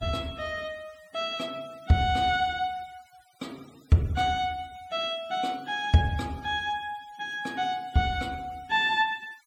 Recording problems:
denoising artefacts; signal-to-artefact ratio 26 dB

